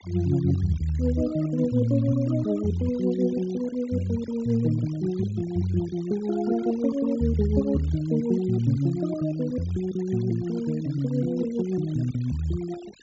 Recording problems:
treble cut off; nothing above 7.5 kHz
denoising artefacts; signal-to-artefact ratio 24 dB

